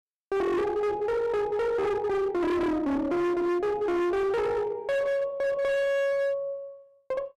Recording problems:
distorted audio; hard clipping, signal-to-distortion ratio 7 dB

